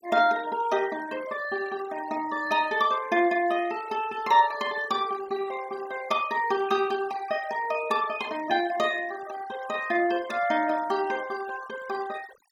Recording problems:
noise reduction artefacts; signal-to-artefact ratio 17 dB

